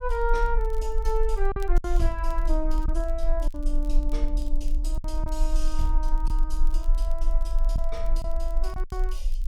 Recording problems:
low-frequency rumble; below 38 Hz, strongest tone 24 Hz, SNR -4 dB
crackling; vinyl, SNR 24 dB
packet loss; 5% of the sound replaced, filled with silence

